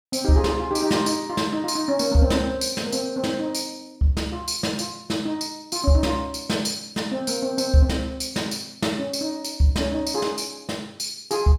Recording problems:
none

